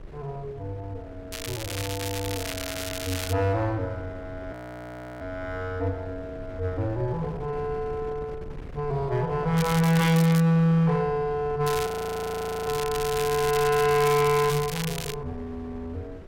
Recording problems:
distorted audio; hard clipping, signal-to-distortion ratio 10 dB
wind on the microphone; below 340 Hz, SNR 16 dB
crackling; from 1.5 to 3.5 s, at 9.5 s and from 12 to 15 s; loose cable, SNR 8 dB
frozen audio; at 4.5 s for 0.5 s and at 12 s for 1 s

